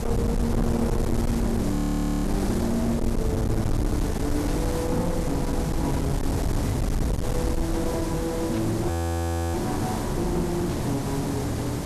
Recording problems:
distorted audio; hard clipping, signal-to-distortion ratio 8 dB
hiss; SNR 3 dB
low-frequency rumble; below 120 Hz, SNR 3 dB
frozen audio; at 2 s for 0.5 s and at 9 s for 0.5 s
burst of static; at 4.5 s, at 8.5 s and at 11 s; peak -11 dB vs average level

